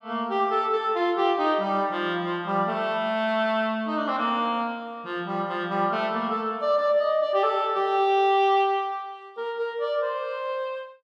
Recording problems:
none

